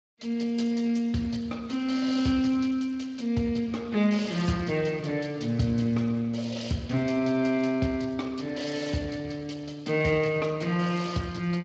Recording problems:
lossy codec; Speex, then Speex, log-spectral distance 5 dB, nothing above 7.3 kHz

